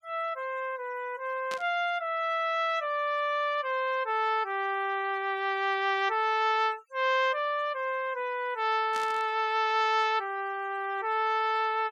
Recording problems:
denoising artefacts; signal-to-artefact ratio 26 dB
burst of static; at 1.5 s and at 9 s; peak -7 dB vs average level

